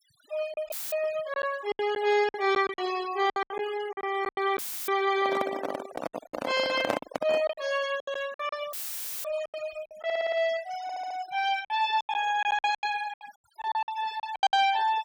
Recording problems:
noise reduction artefacts; signal-to-artefact ratio 16 dB
lost packets; 13% of the sound replaced, filled with silence
audio cutting out; at 0.5 s, at 4.5 s and at 8.5 s for 0.5 s; filled with static
microphone handling noise; from 5 to 7.5 s; peak +5 dB vs average level
audio stuttering; at 10 s and at 11 s

